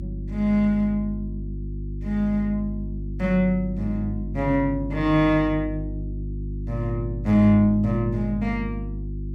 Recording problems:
electrical hum; 50 Hz, harmonics up to 350 Hz, SNR 9 dB

